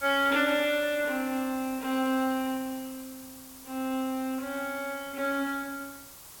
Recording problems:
background hiss; SNR 15 dB

